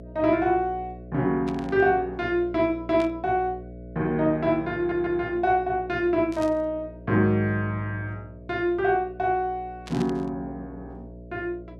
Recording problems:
hum; 60 Hz, harmonics up to 660 Hz, SNR 17 dB
static burst; 4 times, first at 1.5 s; peak -10 dB vs average level
stutter; at 5 s

